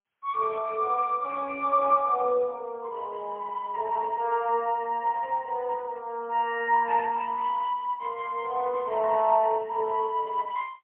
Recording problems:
telephone audio; 300 Hz to 2.6 kHz, AMR-NB, then MP3

